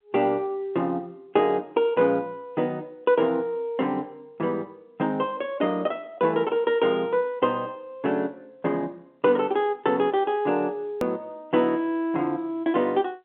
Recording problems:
telephone audio; 280 Hz to 3.7 kHz, G.711
click at an edit; at 11 s

